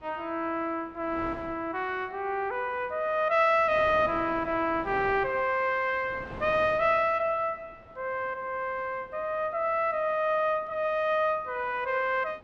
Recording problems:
wind noise; below 860 Hz, SNR 20 dB

